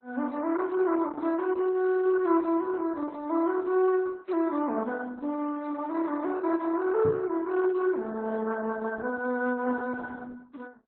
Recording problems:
lossy compression; MP3, then Opus, log-spectral distance 3 dB, nothing above 4 kHz
microphone thump; at 7 s; peak -2 dB vs average level

